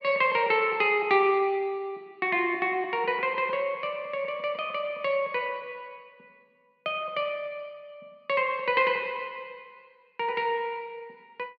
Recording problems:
none

